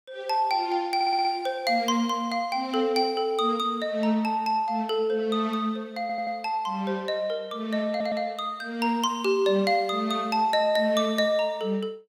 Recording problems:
stutter; at 1 s, at 6 s and at 8 s

